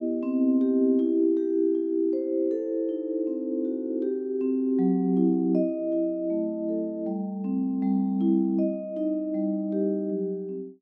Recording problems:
none

